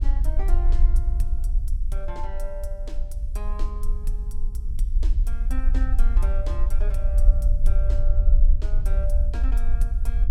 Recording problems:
low-frequency rumble; below 46 Hz, strongest tone 24 Hz, SNR -15 dB

